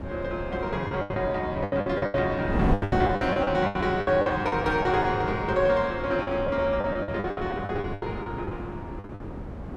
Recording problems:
wind on the microphone; below 350 Hz, SNR 7 dB
lost packets; 17% of the sound replaced, filled with the last packet

